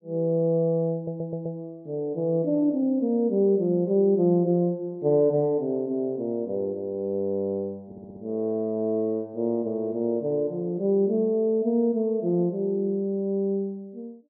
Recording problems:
audio stuttering; at 1 s and at 8 s

